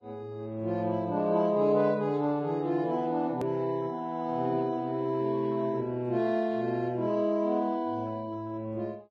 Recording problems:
lossy codec; Vorbis, log-spectral distance 2 dB, nothing above 13.1 kHz
hard cut with a click; at 3.5 s

